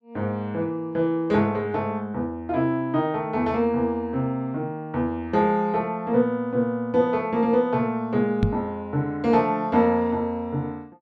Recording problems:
knock on the microphone; at 8.5 s; peak +5 dB vs average level

